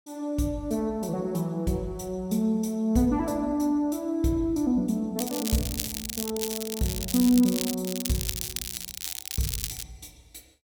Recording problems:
crackling; from 5 to 8 s and from 8 to 10 s; loose cable, SNR 5 dB

